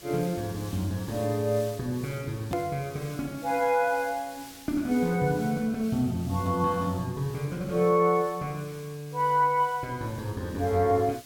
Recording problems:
hiss; SNR 19 dB
edit click; at 2.5 s

